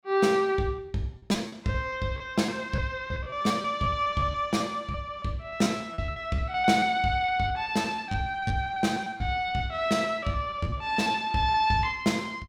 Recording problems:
lost packets; 12% of the sound replaced, filled with repeated pitch periods

